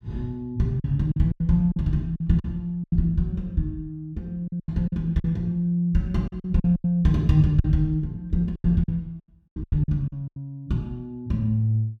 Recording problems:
packet loss; 11% of the sound replaced, filled with silence

